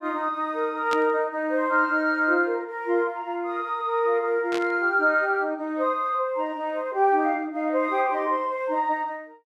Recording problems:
static burst; at 1 s and at 4.5 s; peak -4 dB vs average level

